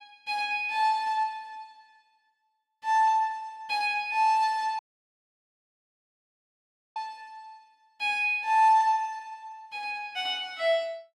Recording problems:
dropout; at 5 s for 2 s

